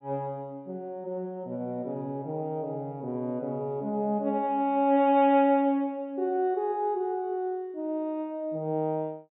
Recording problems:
treble cut off; nothing above 4 kHz

